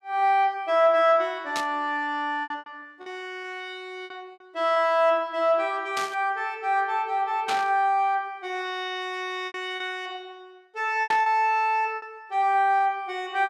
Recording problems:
packet loss; 5% of the sound replaced, filled with repeated pitch periods
burst of static; 4 times, first at 1.5 s; peak -2 dB vs average level

